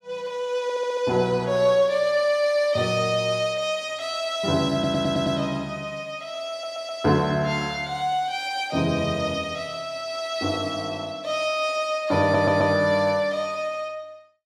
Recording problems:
audio stuttering; 4 times, first at 0.5 s

